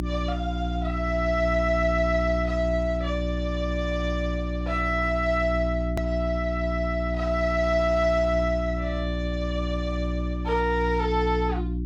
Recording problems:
hum; 60 Hz, harmonics up to 360 Hz, SNR 3 dB
edit click; at 6 s

